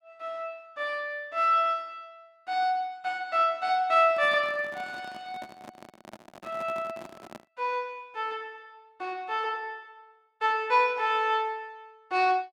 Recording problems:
microphone handling noise; from 4 to 7.5 s; peak -11 dB vs average level

